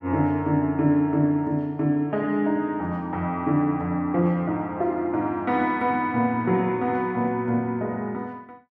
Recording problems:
none

